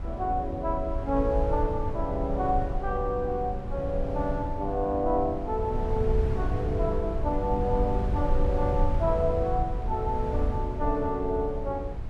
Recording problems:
wind noise; below 92 Hz, SNR 3 dB

